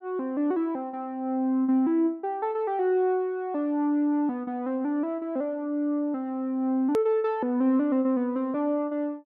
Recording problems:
edit click; at 7 s

